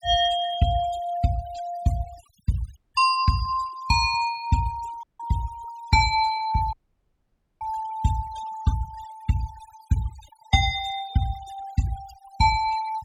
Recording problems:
noise reduction artefacts; signal-to-artefact ratio 15 dB
dropout; at 3 s, at 5 s and at 6.5 s for 1 s

